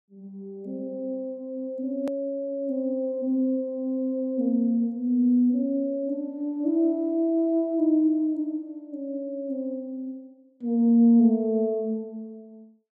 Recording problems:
edit click; at 2 s

